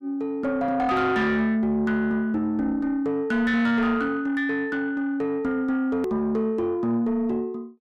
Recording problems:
distortion; soft clipping, signal-to-distortion ratio 10 dB
edit click; at 6 s

